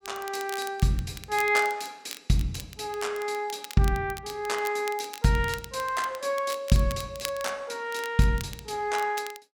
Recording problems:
crackling; vinyl, SNR 14 dB

